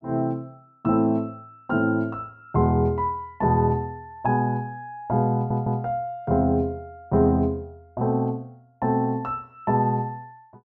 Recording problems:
stutter; at 5.5 s

